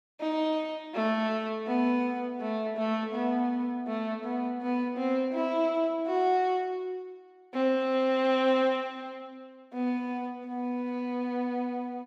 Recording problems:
none

